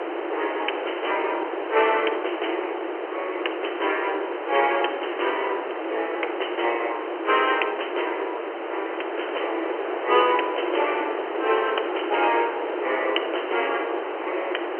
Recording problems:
phone line; 300 Hz to 3.1 kHz, G.711
hiss; SNR 4 dB
crackle; from 4 to 7.5 s and at 13 s; loose cable, SNR 25 dB

